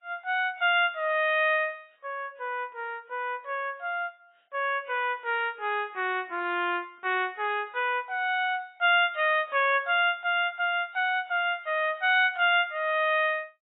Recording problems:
lossy compression; AAC, log-spectral distance 2 dB, nothing above 3.5 kHz

